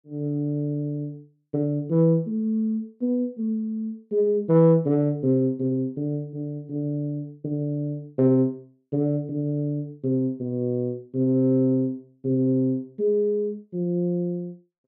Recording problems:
none

